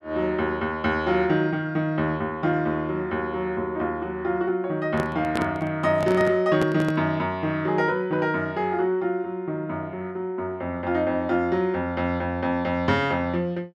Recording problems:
microphone handling noise; from 5 to 7 s; peak +1 dB vs average level

